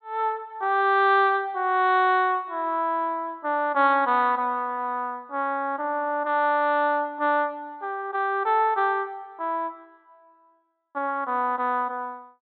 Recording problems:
low-pass filter; nothing above 4 kHz

